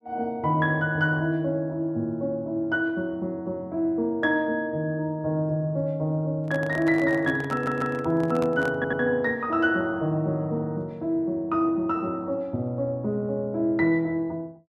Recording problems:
handling noise; from 6.5 to 9 s; peak -6 dB vs average level
audio stuttering; at 7.5 s and at 9 s

